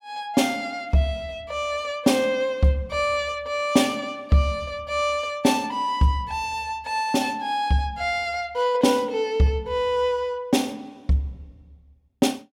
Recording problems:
none

